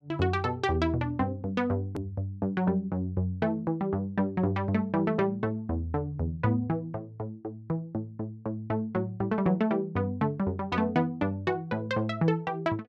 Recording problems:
click at an edit; at 2 s

